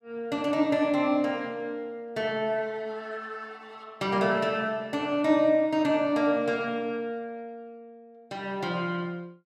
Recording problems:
none

